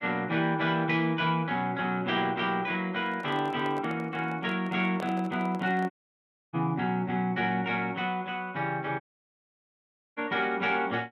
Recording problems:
handling noise; from 3 to 6 s; peak -6 dB vs average level
dropout; at 6 s for 0.5 s and at 9 s for 1 s

